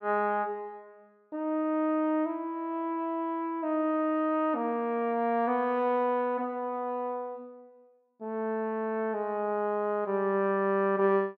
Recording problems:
none

